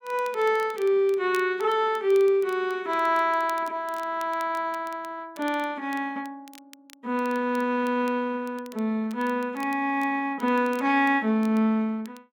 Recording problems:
crackling; vinyl, SNR 25 dB

